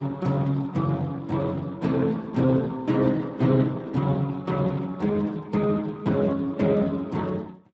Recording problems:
lossy compression; Speex, log-spectral distance 3 dB

